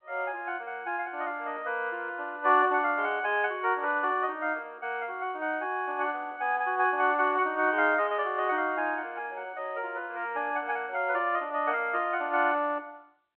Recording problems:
telephone audio; 260 Hz to 3.2 kHz, G.711

